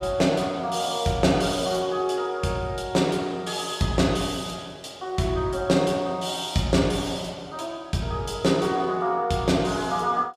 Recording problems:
none

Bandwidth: 15.5 kHz